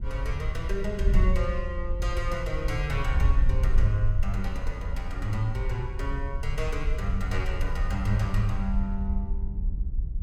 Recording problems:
wind noise; below 60 Hz, SNR -2 dB

